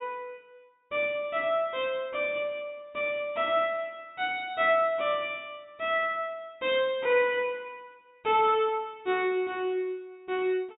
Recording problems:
low-pass filter; nothing above 4 kHz

